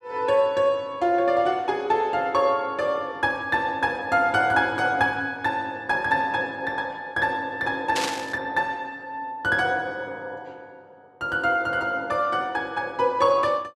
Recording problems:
burst of static; at 8 s; peak +1 dB vs average level

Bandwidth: 13 kHz